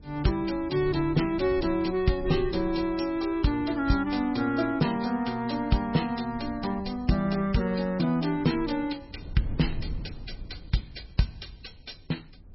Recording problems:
lossy compression; MP3, log-spectral distance 5 dB, nothing above 5.5 kHz
wind on the microphone; below 110 Hz, SNR 15 dB

